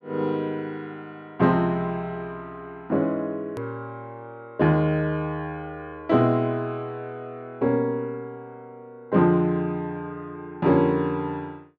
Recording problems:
hard cut with a click; at 3.5 s

